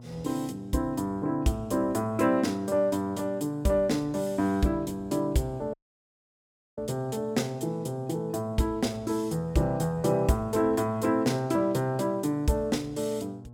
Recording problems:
mains hum; 60 Hz, harmonics up to 1.1 kHz, SNR 20 dB
dropout; at 5.5 s for 1 s

